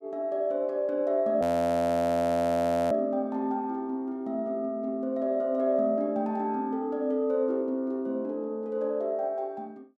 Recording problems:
frozen audio; at 1.5 s for 1.5 s

